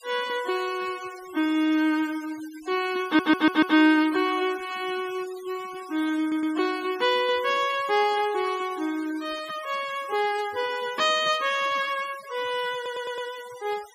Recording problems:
denoising artefacts; signal-to-artefact ratio 18 dB
stutter; at 3 s, at 6 s and at 13 s

